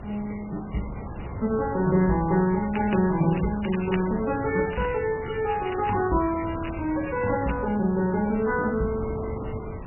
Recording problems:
lossy codec; MP3, log-spectral distance 9 dB, nothing above 2.7 kHz
wind noise; below 440 Hz, SNR 12 dB
crackling; from 2.5 to 5 s and from 5 to 7.5 s; loose cable, SNR 14 dB

